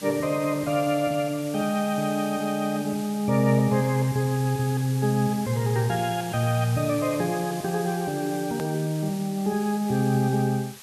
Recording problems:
hiss; slope +1 dB per octave, SNR 15 dB
click at an edit; at 8.5 s

